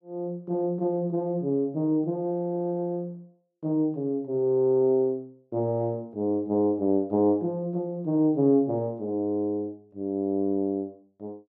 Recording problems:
none

